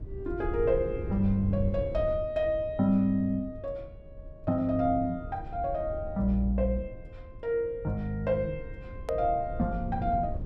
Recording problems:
low-frequency rumble; below 110 Hz, SNR 11 dB
edit click; at 9 s

